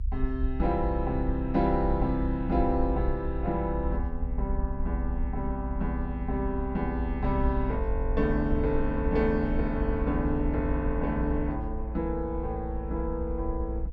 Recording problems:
low-frequency rumble; below 60 Hz, SNR 3 dB

